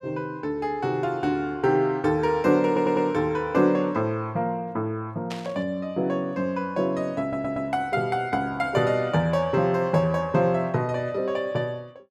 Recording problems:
audio stuttering; at 2.5 s and at 7 s
static burst; at 5.5 s; peak -7 dB vs average level

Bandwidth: 13.5 kHz